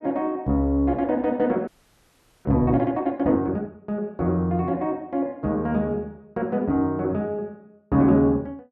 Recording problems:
audio freezing; at 1.5 s for 1 s

